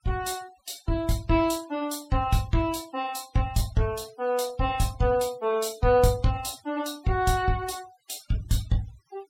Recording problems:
denoising artefacts; signal-to-artefact ratio 22 dB

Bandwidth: 16.5 kHz